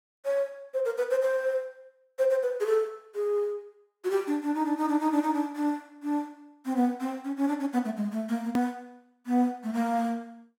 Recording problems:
hard cut with a click; at 8.5 s

